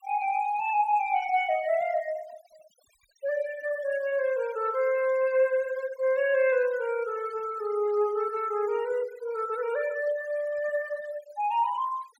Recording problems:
denoising artefacts; signal-to-artefact ratio 20 dB

